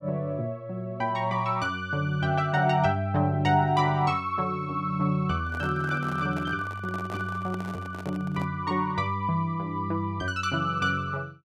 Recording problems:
microphone handling noise; from 5.5 to 8.5 s; peak -8 dB vs average level

